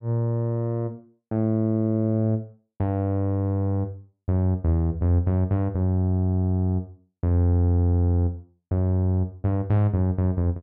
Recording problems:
none

